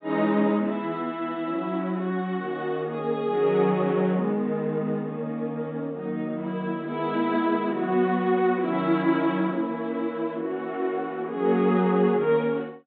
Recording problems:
treble cut off; nothing above 4 kHz

